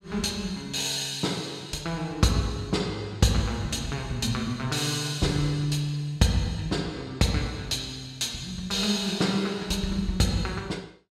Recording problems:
none

